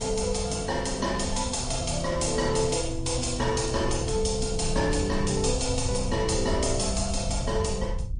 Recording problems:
lossy compression; MP3, log-spectral distance 5 dB, nothing above 9.5 kHz
wind on the microphone; below 88 Hz, SNR 8 dB

